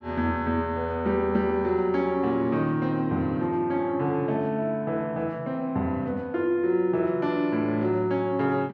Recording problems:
none

